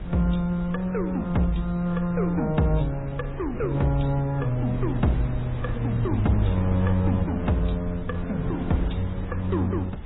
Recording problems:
lossy compression; AAC, then MP3, log-spectral distance 2 dB, nothing above 3.8 kHz
wind noise; below 160 Hz, SNR 9 dB

